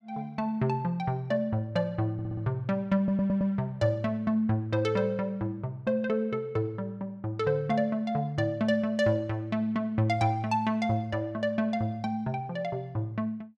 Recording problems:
audio stuttering; at 2 s and at 3 s

